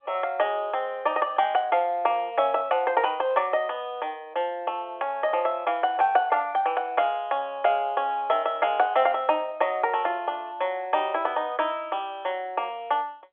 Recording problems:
telephone audio; 340 Hz to 3.4 kHz, G.711

